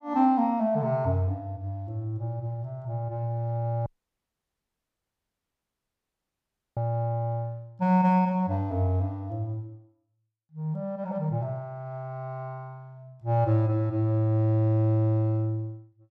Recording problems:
dropout; at 4 s for 3 s

